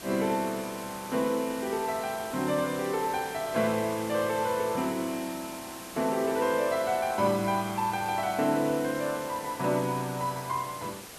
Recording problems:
hiss; slope -2 dB per octave, SNR 13 dB

